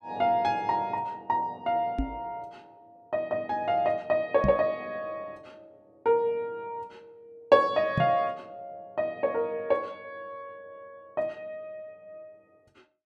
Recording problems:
microphone bump; at 2 s, at 4.5 s and at 8 s; peak +4 dB vs average level

